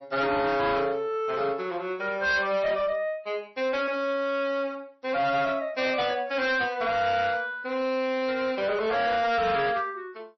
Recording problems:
lossy codec; MP3, log-spectral distance 2 dB, nothing above 5.7 kHz
distortion; hard clipping, signal-to-distortion ratio 11 dB

